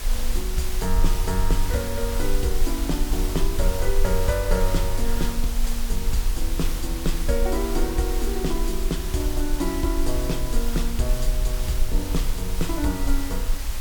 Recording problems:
hum; 60 Hz, harmonics up to 420 Hz, SNR 23 dB
hiss; slope -1 dB per octave, SNR 6 dB
rumble; below 40 Hz, strongest tone 20 Hz, SNR 1 dB

